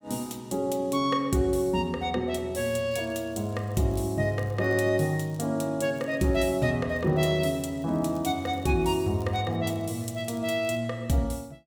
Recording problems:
crackle; 4 times, first at 2.5 s; loose cable, SNR 29 dB

